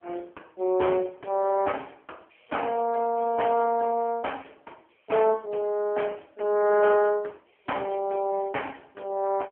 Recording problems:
phone line; 300 Hz to 3.1 kHz, AMR-NB

